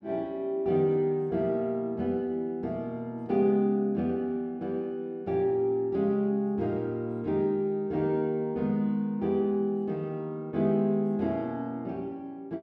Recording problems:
none

